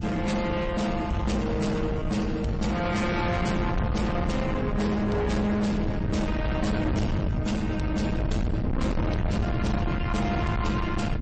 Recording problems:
lossy codec; MP3, then MP3, log-spectral distance 2 dB, nothing above 8.2 kHz
distortion; soft clipping, signal-to-distortion ratio 7 dB
rumble; below 230 Hz, SNR 2 dB

